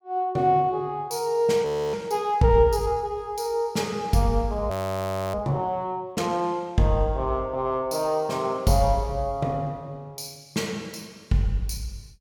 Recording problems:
audio freezing; at 1.5 s and at 4.5 s for 0.5 s

